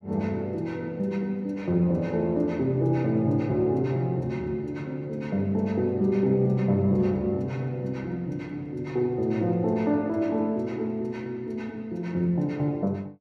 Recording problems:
none

